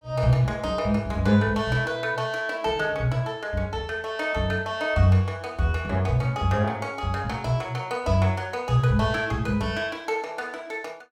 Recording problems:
none

